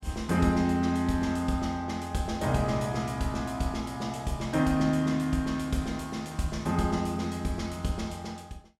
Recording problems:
none

